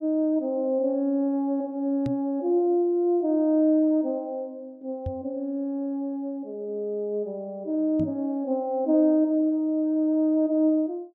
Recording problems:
microphone bump; at 2 s, at 5 s and at 8 s; peak -2 dB vs average level

